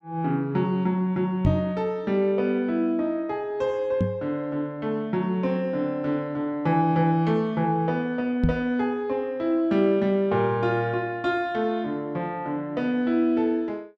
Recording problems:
knock on the microphone; at 1.5 s, at 4 s and at 8.5 s; peak +6 dB vs average level

